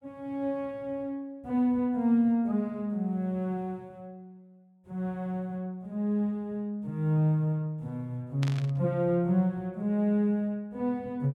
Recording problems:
burst of static; at 8.5 s; peak -6 dB vs average level

